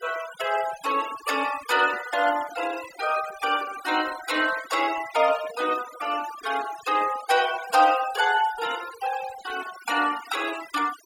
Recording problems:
denoising artefacts; signal-to-artefact ratio 13 dB

